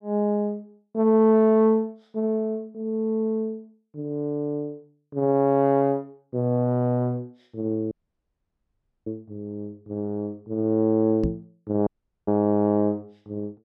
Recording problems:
dropout; at 8 s for 1 s and at 12 s
knock on the microphone; at 11 s; peak +1 dB vs average level

